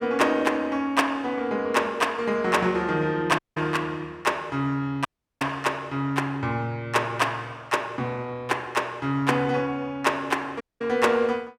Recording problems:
dropout; at 3.5 s, at 5 s and at 11 s

